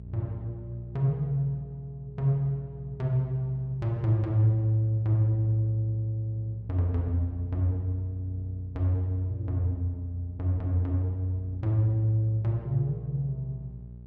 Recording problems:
electrical hum; 60 Hz, harmonics up to 420 Hz, SNR 16 dB

